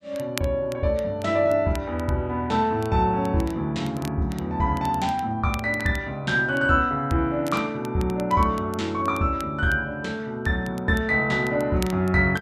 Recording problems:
crackle; vinyl, SNR 20 dB

